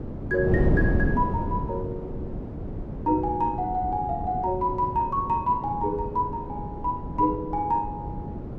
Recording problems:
wind noise; below 290 Hz, SNR 4 dB

